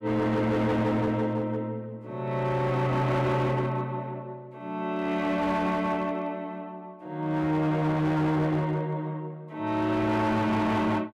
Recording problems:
distorted audio; hard clipping, signal-to-distortion ratio 10 dB

